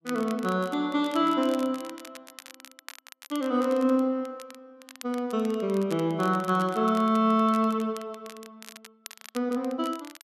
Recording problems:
crackle; vinyl, SNR 20 dB

